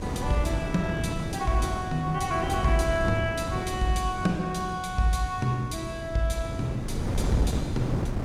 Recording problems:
wind noise; below 290 Hz, SNR 5 dB

